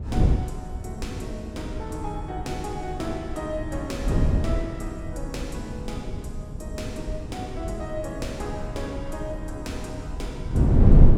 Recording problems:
wind noise; below 150 Hz, SNR -5 dB

